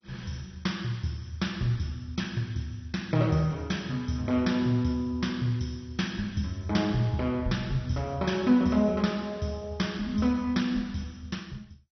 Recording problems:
lossy compression; MP2, log-spectral distance 3 dB, nothing above 6 kHz

